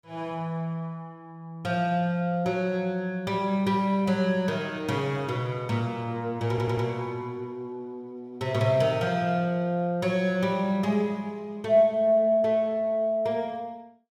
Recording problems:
stutter; at 6.5 s

